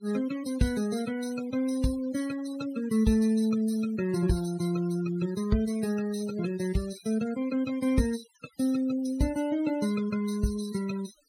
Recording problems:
noise reduction artefacts; signal-to-artefact ratio 16 dB

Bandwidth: 16 kHz